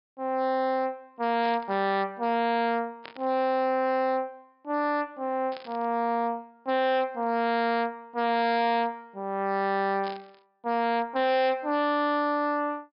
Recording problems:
treble cut off; nothing above 5.5 kHz
distorted audio; hard clipping, signal-to-distortion ratio 11 dB
static burst; 4 times, first at 1.5 s; peak -11 dB vs average level

